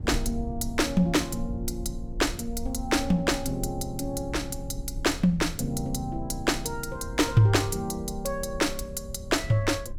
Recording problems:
low-frequency rumble; below 74 Hz, SNR 12 dB

